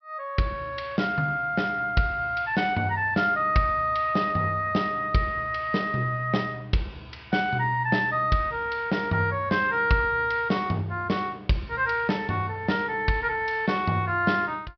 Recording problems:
low-pass filter; nothing above 5.5 kHz

